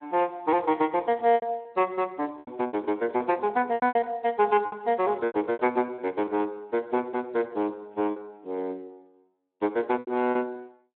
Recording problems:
telephone audio; 220 Hz to 3.4 kHz, Speex
lost packets; 10% of the sound replaced, filled with repeated pitch periods

